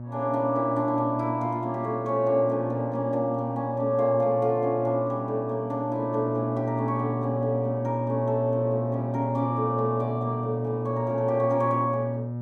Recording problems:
hum; 60 Hz, harmonics up to 600 Hz, SNR 6 dB

